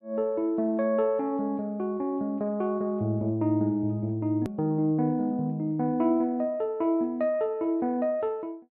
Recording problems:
click at an edit; at 4.5 s

